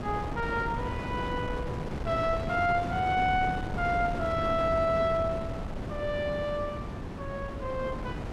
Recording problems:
wind on the microphone; below 470 Hz, SNR 5 dB

